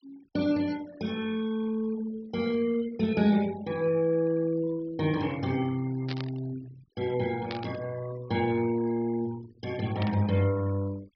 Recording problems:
treble cut off; nothing above 5.5 kHz
denoising artefacts; signal-to-artefact ratio 20 dB
burst of static; at 6 s, at 7.5 s and at 10 s; peak -5 dB vs average level

